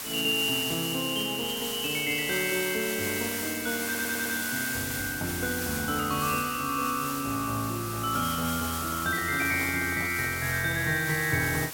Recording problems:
background hiss; slope 0 dB per octave, SNR 5 dB
audio stuttering; at 4 s
handling noise; from 9 to 10 s; peak -8 dB vs average level

